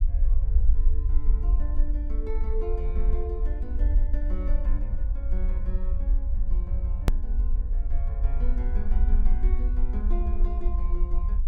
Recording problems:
rumble; below 50 Hz, SNR -12 dB
hard cut with a click; at 7 s

